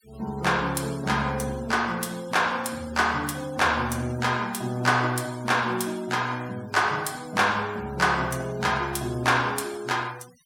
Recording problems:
denoising artefacts; signal-to-artefact ratio 22 dB

